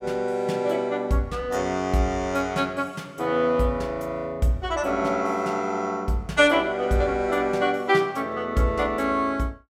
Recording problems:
none

